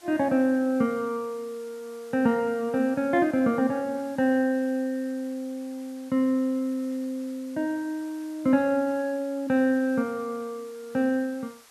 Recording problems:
hiss; SNR 25 dB

